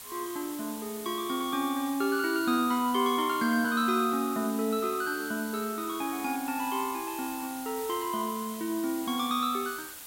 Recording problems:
background hiss; slope 0 dB per octave, SNR 11 dB

